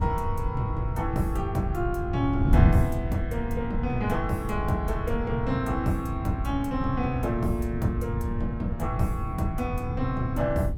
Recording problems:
wind on the microphone; below 130 Hz, SNR 1 dB

